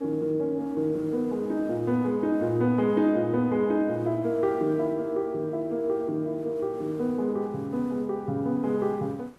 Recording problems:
hiss; slope -7 dB per octave, SNR 26 dB

